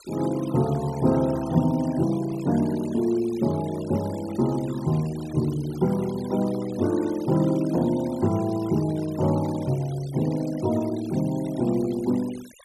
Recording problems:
denoising artefacts; signal-to-artefact ratio 20 dB

